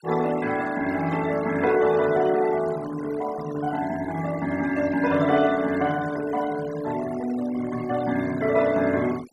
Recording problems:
denoising artefacts; signal-to-artefact ratio 17 dB

